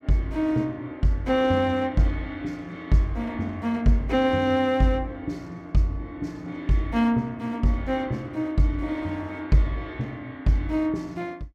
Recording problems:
none

